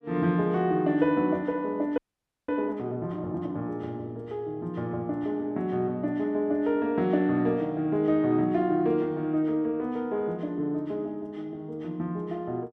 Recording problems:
audio freezing; at 2 s for 0.5 s

